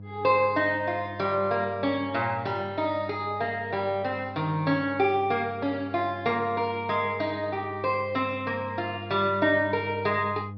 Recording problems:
treble cut off; nothing above 5.5 kHz
hum; 50 Hz, harmonics up to 500 Hz, SNR 15 dB

